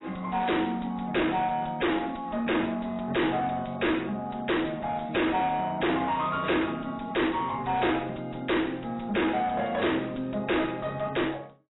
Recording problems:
codec artefacts; AAC, log-spectral distance 7 dB, nothing above 3.9 kHz
distorted audio; soft clipping, signal-to-distortion ratio 5 dB

